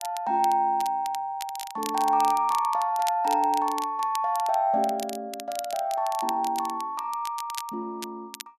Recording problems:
crackling; vinyl, SNR 14 dB

